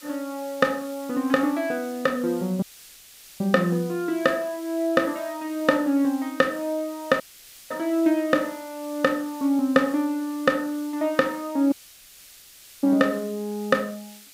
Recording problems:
background hiss; SNR 20 dB
audio cutting out; at 2.5 s for 1 s, at 7 s for 0.5 s and at 12 s for 1 s

